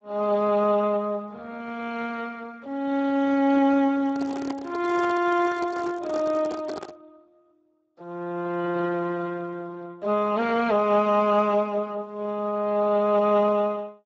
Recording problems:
lossy compression; Speex, log-spectral distance 3 dB
handling noise; from 4 to 7 s; peak -7 dB vs average level

